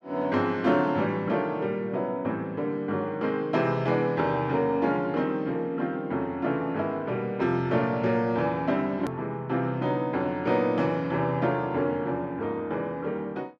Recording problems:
hard cut with a click; at 9 s

